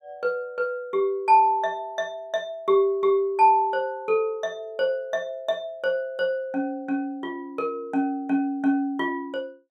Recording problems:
none

